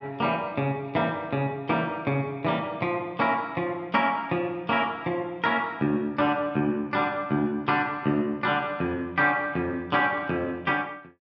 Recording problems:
none

